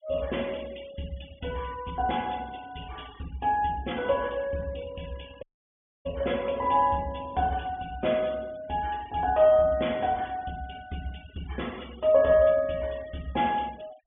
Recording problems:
treble cut off; nothing above 3.4 kHz
noise reduction artefacts; signal-to-artefact ratio 24 dB
audio cutting out; at 5.5 s for 0.5 s

